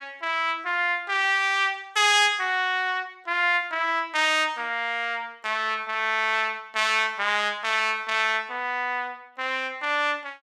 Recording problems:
none

